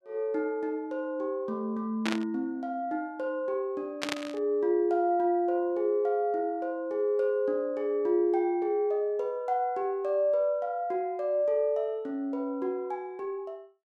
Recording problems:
burst of static; at 2 s and at 4 s; peak +2 dB vs average level

